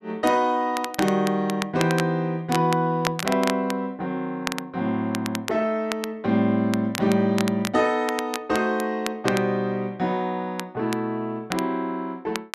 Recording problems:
crackling; vinyl, SNR 10 dB

